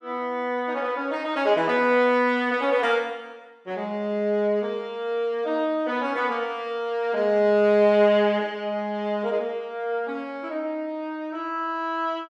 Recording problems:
none

